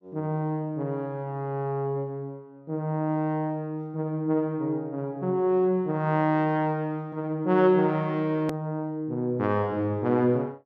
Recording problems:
hard cut with a click; at 8.5 s

